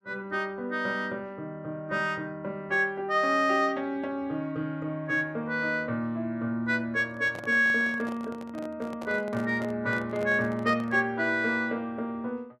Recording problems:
microphone handling noise; from 7 to 11 s; peak -8 dB vs average level

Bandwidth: 14 kHz